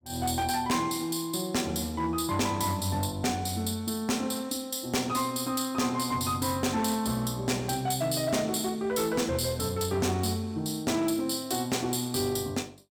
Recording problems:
distortion; hard clipping, signal-to-distortion ratio 11 dB

